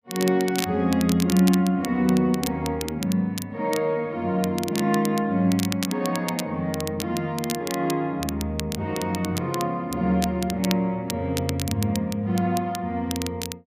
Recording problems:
crackle; vinyl, SNR 11 dB

